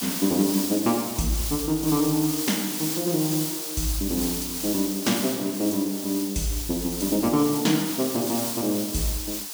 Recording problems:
background hiss; SNR 4 dB

